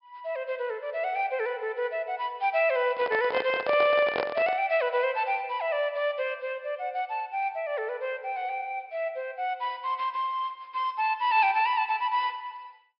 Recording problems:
low-pass filter; nothing above 5.5 kHz
microphone handling noise; from 3 to 4.5 s; peak +3 dB vs average level

